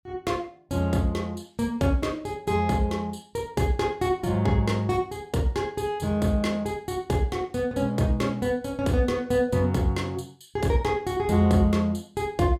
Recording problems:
none

